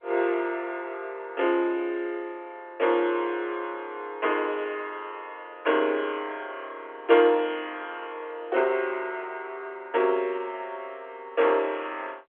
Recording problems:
telephone audio; 300 Hz to 3.4 kHz, G.711

